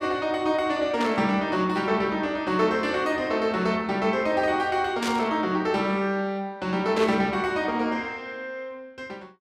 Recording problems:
burst of static; at 1 s, at 5 s and at 7 s; peak -3 dB vs average level

